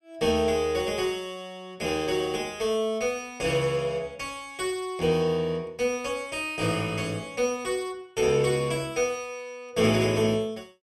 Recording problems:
none

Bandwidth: 13 kHz